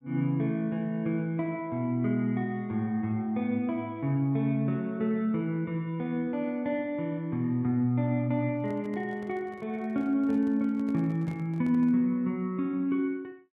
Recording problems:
handling noise; from 8.5 to 12 s; peak -13 dB vs average level

